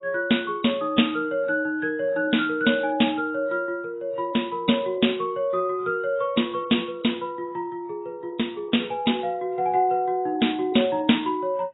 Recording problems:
lossy compression; AAC, log-spectral distance 3 dB, nothing above 3.8 kHz

